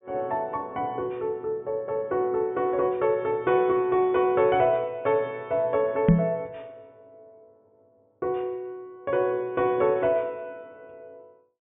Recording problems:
treble cut off; nothing above 3.6 kHz
knock on the microphone; at 6 s; peak +10 dB vs average level

